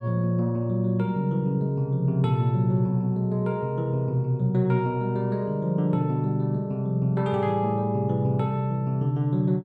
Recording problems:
none

